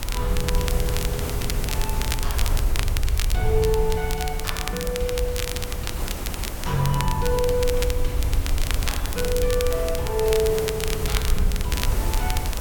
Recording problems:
background hiss; slope -5 dB per octave, SNR 7 dB
rumble; below 66 Hz, SNR 1 dB
crackling; vinyl, SNR 5 dB

